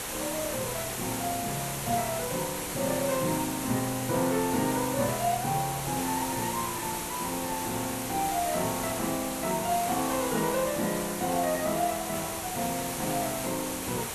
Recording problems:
background hiss; slope -3 dB per octave, SNR 3 dB

